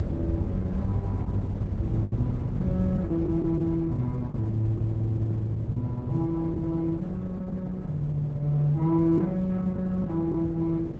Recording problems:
lossy compression; Opus, log-spectral distance 2 dB
hum; 50 Hz, harmonics up to 600 Hz, SNR 14 dB
rumble; below 190 Hz, SNR 5 dB
packet loss; 5% of the sound replaced, filled with the last packet

